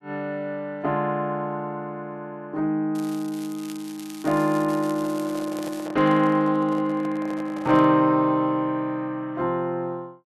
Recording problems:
crackle; from 3 to 6 s; loose cable, SNR 19 dB
microphone handling noise; from 5 to 8 s; peak -9 dB vs average level

